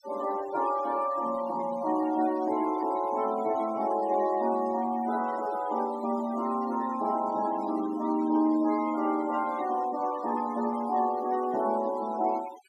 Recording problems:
noise reduction artefacts; signal-to-artefact ratio 17 dB

